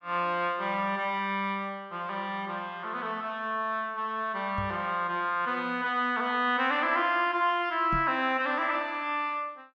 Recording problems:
microphone bump; at 4.5 s and at 8 s; peak -3 dB vs average level

